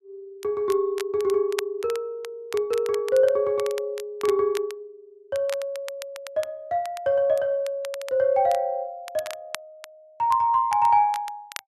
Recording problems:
crackle; vinyl, SNR 18 dB

